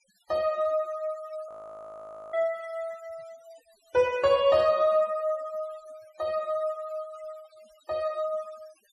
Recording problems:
denoising artefacts; signal-to-artefact ratio 24 dB
frozen audio; at 1.5 s for 1 s

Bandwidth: 12.5 kHz